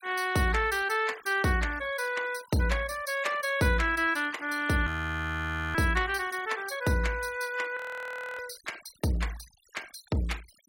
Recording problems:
denoising artefacts; signal-to-artefact ratio 19 dB
audio freezing; at 5 s for 1 s and at 8 s for 0.5 s

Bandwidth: 16.5 kHz